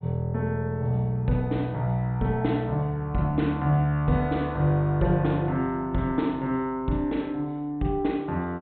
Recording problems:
low-pass filter; nothing above 4 kHz

